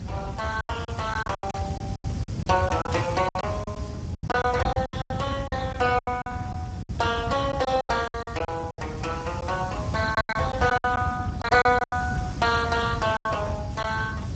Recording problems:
codec artefacts; Speex, log-spectral distance 3 dB, nothing above 7.3 kHz
hiss; slope -1 dB per octave, SNR 21 dB
rumble; below 170 Hz, SNR 5 dB
lost packets; 13% of the sound replaced, filled with silence
burst of static; at 1.5 s and at 3 s; peak -9 dB vs average level

